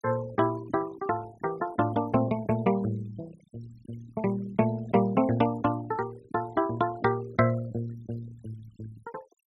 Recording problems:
noise reduction artefacts; signal-to-artefact ratio 19 dB

